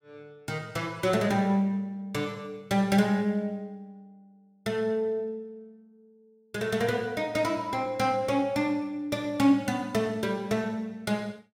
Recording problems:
none

